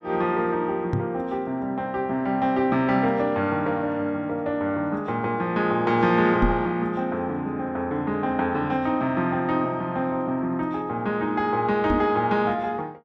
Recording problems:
knock on the microphone; at 1 s, at 6.5 s and at 12 s; peak +4 dB vs average level

